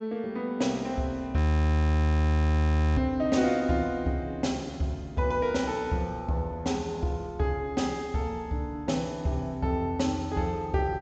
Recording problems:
low-pass filter; nothing above 8 kHz
frozen audio; at 1.5 s for 1.5 s

